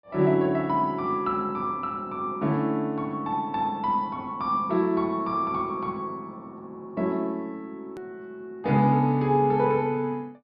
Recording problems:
low-pass filter; nothing above 5.5 kHz
hard cut with a click; at 8 s

